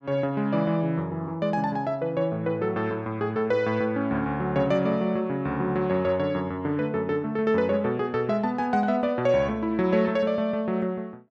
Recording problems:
none

